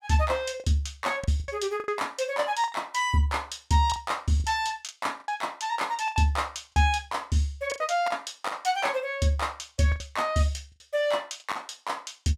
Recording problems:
lost packets; 9% of the sound replaced, filled with the last packet

